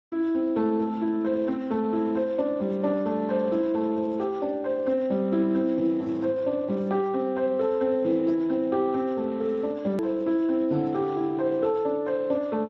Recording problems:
lossy codec; AAC, then Speex, log-spectral distance 2 dB
edit click; at 10 s

